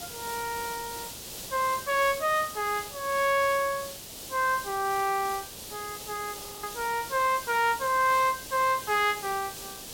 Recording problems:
background hiss; SNR 11 dB
audio freezing; at 6.5 s

